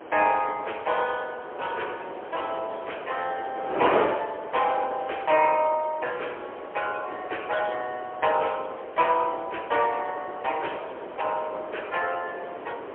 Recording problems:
phone line; 320 Hz to 3.3 kHz, AMR-NB, then MP3
wind noise; below 970 Hz, SNR 8 dB

